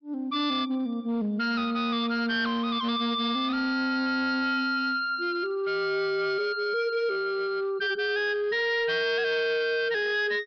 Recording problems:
treble missing; nothing above 5.5 kHz
distorted audio; hard clipping, signal-to-distortion ratio 11 dB

